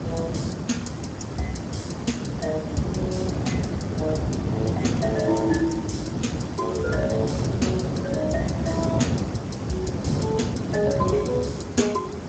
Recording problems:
lossy codec; Speex, log-spectral distance 5 dB, nothing above 7.6 kHz
background hiss; slope -5 dB per octave, SNR 12 dB
wind noise; below 360 Hz, SNR 0 dB
crackling; from 5 to 8 s and from 9.5 to 12 s; loose cable, SNR 23 dB

